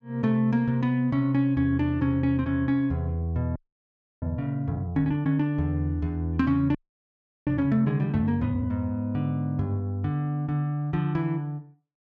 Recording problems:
audio freezing; at 3.5 s for 0.5 s and at 7 s for 0.5 s

